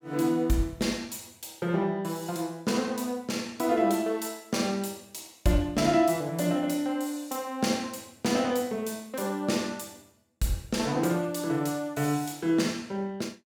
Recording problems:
none

